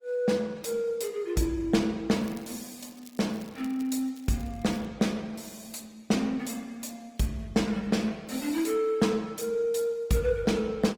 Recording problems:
lossy codec; Opus, log-spectral distance 4 dB, nothing above 19 kHz
crackling; from 2 to 5 s; loose cable, SNR 25 dB

